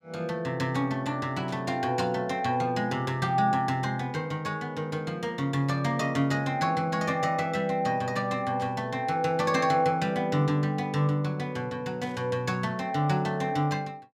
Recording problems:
burst of static; at 1.5 s, at 8.5 s and at 12 s; peak -15 dB vs average level

